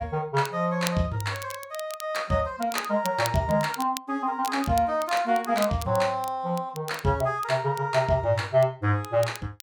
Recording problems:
crackle; vinyl, SNR 15 dB

